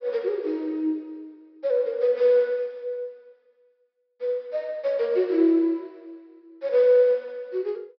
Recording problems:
low-pass filter; nothing above 5.5 kHz

